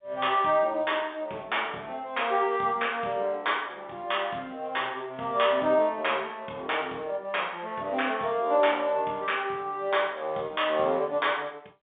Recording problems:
telephone audio; 220 Hz to 3.7 kHz, G.711

